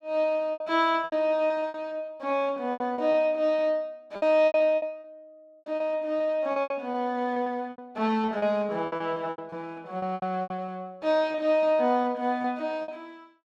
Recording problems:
packet loss; 13% of the sound replaced, filled with repeated pitch periods

